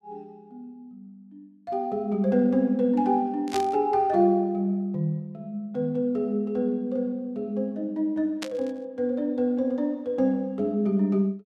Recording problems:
burst of static; at 3.5 s and at 8.5 s; peak -4 dB vs average level

